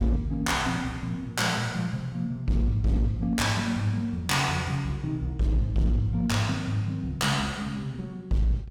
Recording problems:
distorted audio; hard clipping, signal-to-distortion ratio 12 dB

